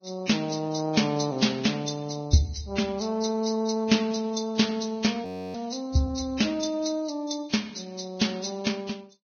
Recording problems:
codec artefacts; Vorbis, log-spectral distance 5 dB, nothing above 6.3 kHz
frozen audio; at 5.5 s

